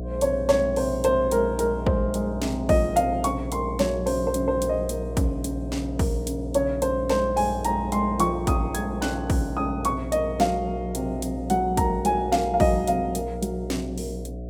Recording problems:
hum; 60 Hz, harmonics up to 720 Hz, SNR 9 dB

